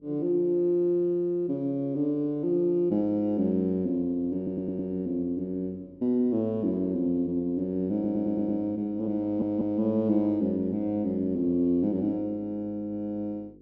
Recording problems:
hum; 50 Hz, harmonics up to 500 Hz, SNR 27 dB
audio stuttering; at 4.5 s, at 8 s and at 9 s

